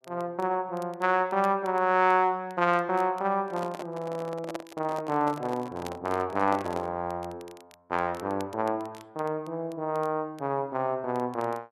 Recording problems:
crackling; vinyl, SNR 27 dB
microphone handling noise; from 3.5 to 7 s; peak -2 dB vs average level

